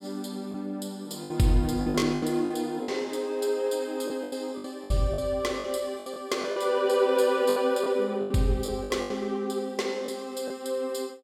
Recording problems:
packet loss; 10% of the sound replaced, filled with the last packet

